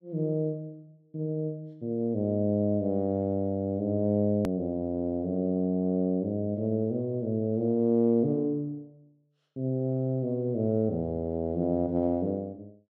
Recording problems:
click at an edit; at 4.5 s

